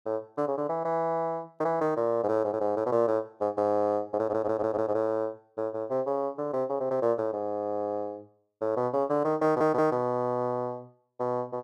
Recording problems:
stutter; at 4 s and at 9.5 s

